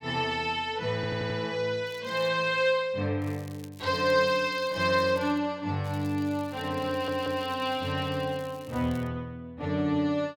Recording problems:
stutter; at 1 s and at 7 s
crackling; at 2 s, from 3 to 5.5 s and from 6 to 9 s; loose cable, SNR 24 dB

